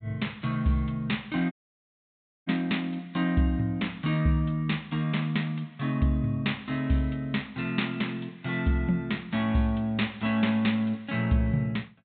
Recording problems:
treble cut off; nothing above 4 kHz
audio cutting out; at 1.5 s for 1 s

